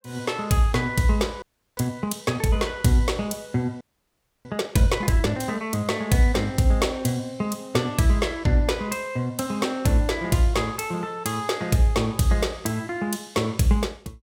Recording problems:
frozen audio; at 1.5 s and at 4 s for 0.5 s

